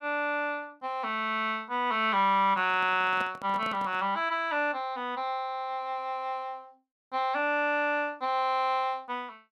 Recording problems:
handling noise; from 2.5 to 4 s; peak -8 dB vs average level

